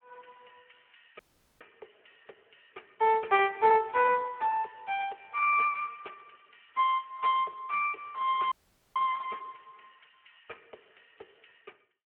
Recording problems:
telephone audio; 340 Hz to 3.2 kHz, Speex
dropout; at 1 s and at 8.5 s

